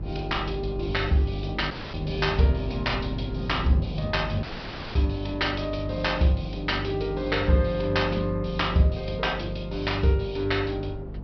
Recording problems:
low-pass filter; nothing above 5.3 kHz
lossy codec; G.722, log-spectral distance 4 dB
electrical hum; 50 Hz, harmonics up to 550 Hz, SNR 9 dB
wind noise; below 320 Hz, SNR 15 dB
audio cutting out; at 1.5 s and at 4.5 s for 0.5 s

